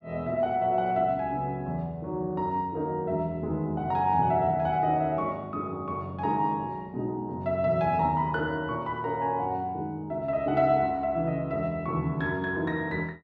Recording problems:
none

